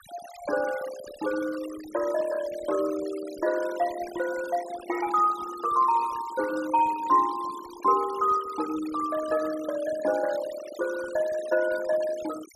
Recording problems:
denoising artefacts; signal-to-artefact ratio 16 dB

